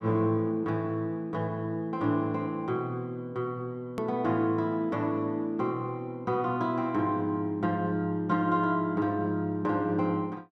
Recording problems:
hard cut with a click; at 4 s

